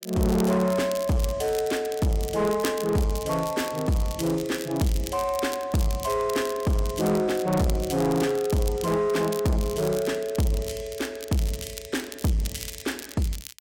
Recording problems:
distortion; soft clipping, signal-to-distortion ratio 10 dB
crackle; vinyl, SNR 13 dB

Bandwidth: 16.5 kHz